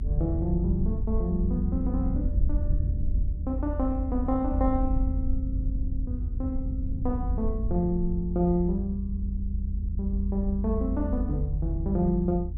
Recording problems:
low-frequency rumble; below 78 Hz, SNR 0 dB

